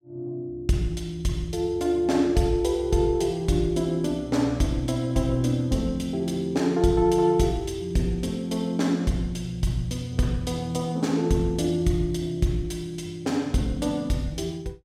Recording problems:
none

